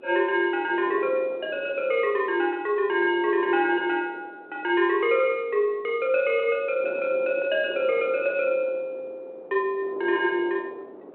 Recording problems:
phone line; 300 Hz to 3.2 kHz, G.726
wind noise; below 560 Hz, SNR 17 dB

